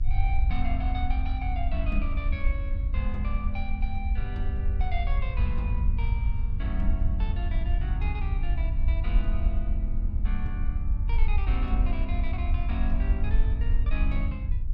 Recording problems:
hum; 50 Hz, harmonics up to 1.2 kHz, SNR 18 dB
low-frequency rumble; below 60 Hz, SNR -7 dB

